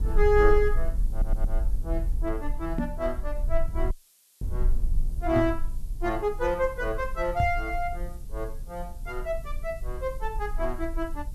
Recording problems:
hiss; slope +3 dB per octave, SNR 27 dB
rumble; below 44 Hz, strongest tone 18 Hz, SNR 4 dB
stutter; at 1 s
microphone thump; at 3 s, at 5.5 s and at 7.5 s; peak +6 dB vs average level
dropout; at 4 s for 0.5 s

